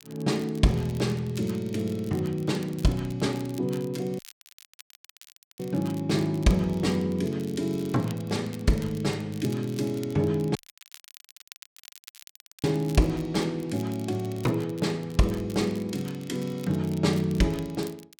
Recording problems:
crackle; vinyl, SNR 21 dB
dropout; at 4 s for 1.5 s and at 11 s for 2 s

